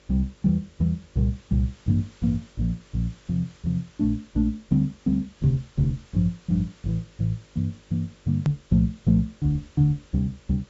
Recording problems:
low-pass filter; nothing above 8 kHz
hum; 50 Hz, harmonics up to 600 Hz, SNR 33 dB
background hiss; SNR 29 dB
edit click; at 8.5 s

